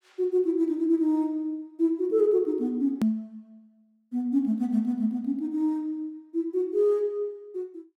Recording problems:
edit click; at 3 s

